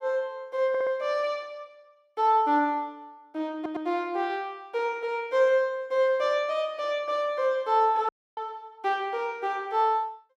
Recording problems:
audio stuttering; at 0.5 s and at 3.5 s
audio cutting out; at 8 s

